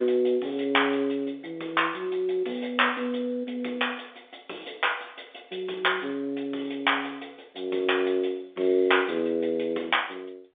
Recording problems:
phone line; 320 Hz to 3.6 kHz, G.711

